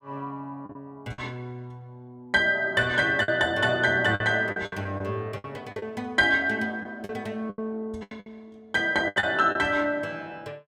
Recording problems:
packet loss; 8% of the sound replaced, filled with the last packet

